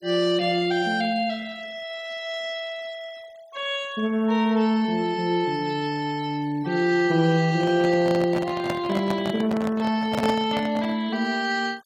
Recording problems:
denoising artefacts; signal-to-artefact ratio 24 dB
handling noise; from 7.5 to 11 s; peak 0 dB vs average level

